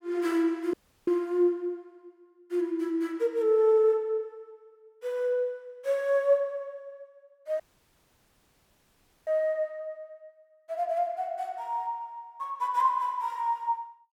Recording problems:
audio cutting out; at 0.5 s and at 7.5 s for 1.5 s

